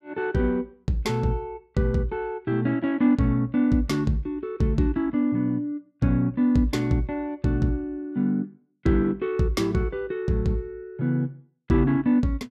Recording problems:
none

